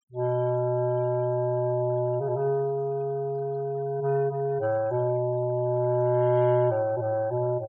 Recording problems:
noise reduction artefacts; signal-to-artefact ratio 26 dB

